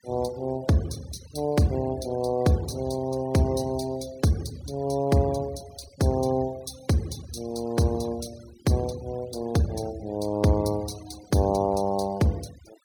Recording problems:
denoising artefacts; signal-to-artefact ratio 21 dB

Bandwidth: 17.5 kHz